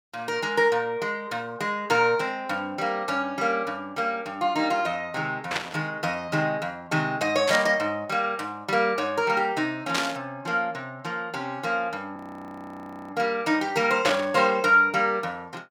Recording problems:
static burst; 4 times, first at 5.5 s; peak +3 dB vs average level
audio freezing; at 12 s for 1 s

